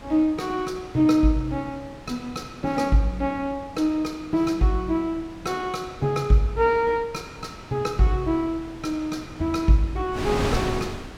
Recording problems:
wind on the microphone; below 970 Hz, SNR 12 dB

